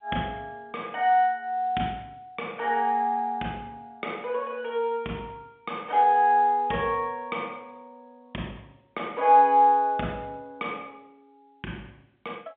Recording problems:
telephone audio; 170 Hz to 3.6 kHz, G.711

